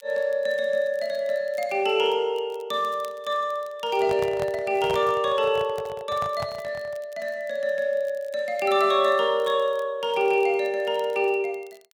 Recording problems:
crackling; vinyl, SNR 30 dB
handling noise; from 4 to 7 s; peak -4 dB vs average level

